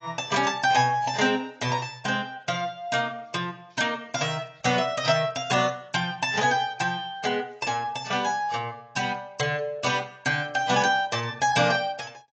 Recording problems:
lossy codec; AAC, log-spectral distance 4 dB

